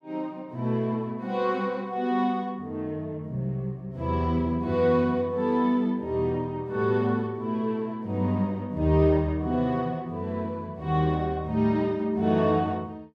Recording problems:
none

